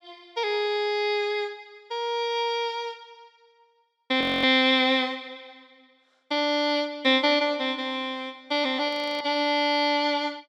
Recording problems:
frozen audio; at 4 s and at 9 s

